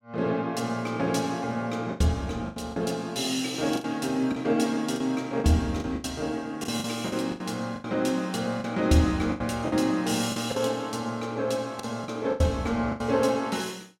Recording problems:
lost packets; 9% of the sound replaced, filled with the last packet

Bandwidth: 16 kHz